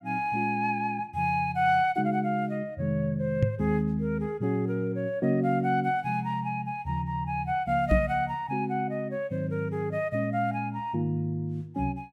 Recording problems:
knock on the microphone; at 3.5 s and at 8 s; peak +8 dB vs average level

